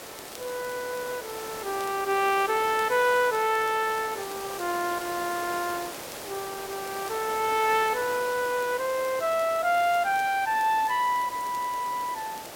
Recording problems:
hiss; slope -4 dB per octave, SNR 11 dB
crackle; vinyl, SNR 26 dB

